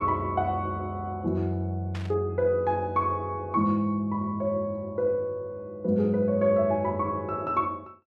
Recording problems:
static burst; at 2 s; peak -10 dB vs average level

